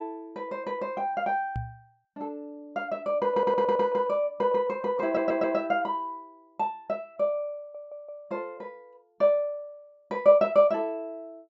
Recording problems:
treble cut off; nothing above 8 kHz
microphone thump; at 1.5 s; peak -3 dB vs average level
stutter; at 3.5 s, at 5 s and at 7.5 s

